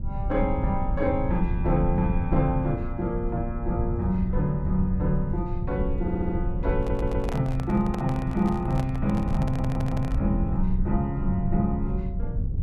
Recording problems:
low-frequency rumble; below 110 Hz, SNR 3 dB
stutter; at 6 s, at 7 s and at 9.5 s
microphone handling noise; from 7 to 10 s; peak -5 dB vs average level

